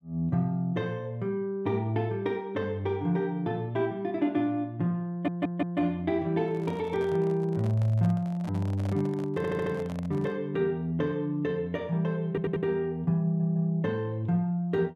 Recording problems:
stutter; 4 times, first at 5 s
microphone handling noise; from 6.5 to 10 s; peak -9 dB vs average level

